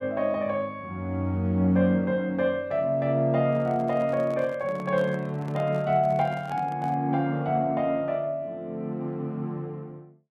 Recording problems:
microphone handling noise; from 3.5 to 7 s; peak -11 dB vs average level

